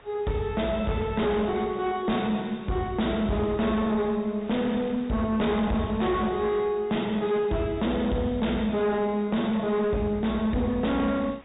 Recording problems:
treble missing; nothing above 4 kHz
distorted audio; hard clipping, uneven, signal-to-distortion ratio 10 dB
wind noise; below 2 kHz, SNR 24 dB

